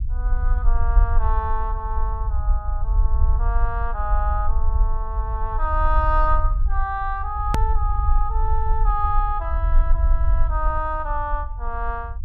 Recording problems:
rumble; below 54 Hz, SNR -3 dB
edit click; at 7.5 s

